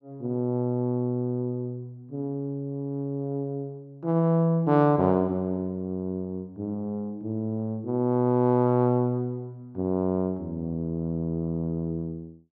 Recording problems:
none

